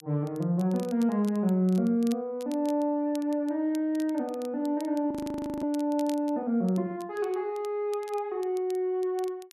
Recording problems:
crackle; vinyl, SNR 23 dB
frozen audio; at 5 s for 0.5 s

